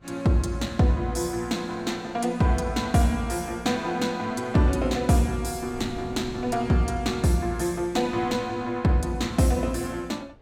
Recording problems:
wind on the microphone; below 340 Hz, SNR 21 dB

